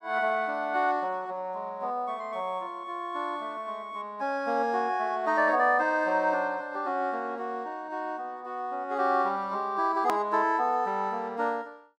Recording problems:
click at an edit; at 10 s

